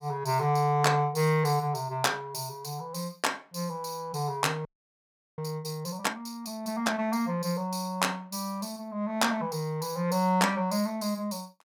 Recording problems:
frozen audio; at 4.5 s for 0.5 s

